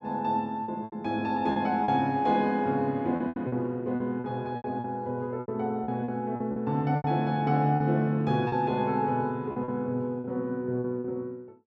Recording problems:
packet loss; 10% of the sound replaced, filled with repeated pitch periods

